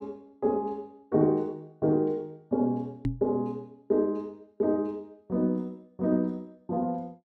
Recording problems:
knock on the microphone; at 3 s; peak +3 dB vs average level

